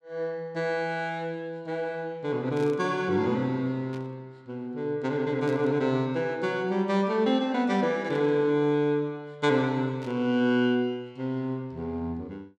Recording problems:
static burst; 5 times, first at 2.5 s; peak -15 dB vs average level

